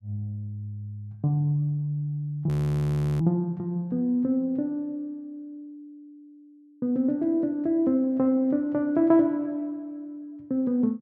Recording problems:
audio freezing; at 2.5 s for 0.5 s

